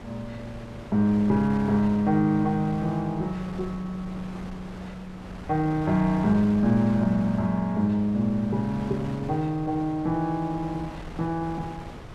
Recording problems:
wind noise; below 770 Hz, SNR 15 dB

